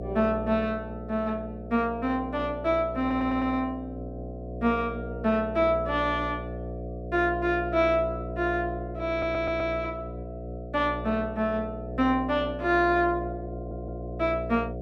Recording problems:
electrical hum; 60 Hz, harmonics up to 720 Hz, SNR 9 dB
audio stuttering; at 3 s, at 9 s and at 14 s

